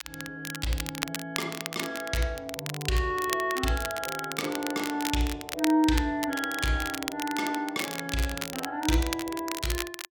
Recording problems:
crackle; vinyl, SNR 6 dB

